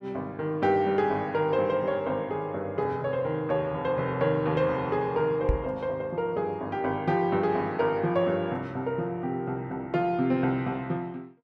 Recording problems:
knock on the microphone; at 5.5 s; peak +5 dB vs average level

